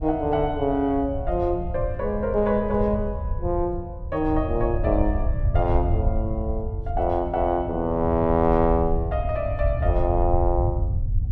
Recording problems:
wind on the microphone; below 90 Hz, SNR 4 dB

